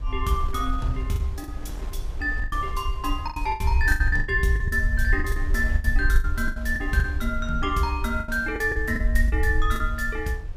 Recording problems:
low-frequency rumble; below 64 Hz, SNR 2 dB
wind on the microphone; below 870 Hz, SNR 19 dB
lost packets; 12% of the sound replaced, filled with the last packet

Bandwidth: 15.5 kHz